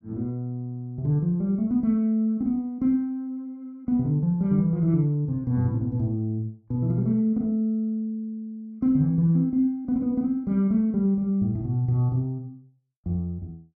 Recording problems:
none

